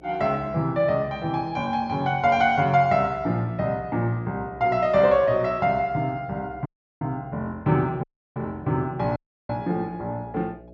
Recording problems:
treble missing; nothing above 8 kHz
hum; 60 Hz, harmonics up to 660 Hz, SNR 25 dB
dropout; at 6.5 s, at 8 s and at 9 s

